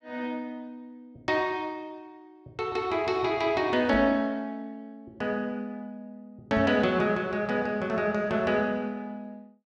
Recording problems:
microphone bump; at 4 s and at 6.5 s; peak -2 dB vs average level

